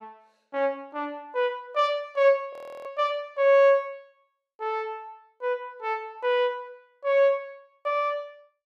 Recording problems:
frozen audio; at 2.5 s

